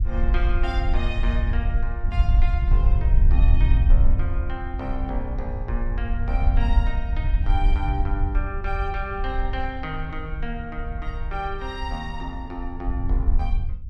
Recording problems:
wind noise; below 64 Hz, SNR -7 dB

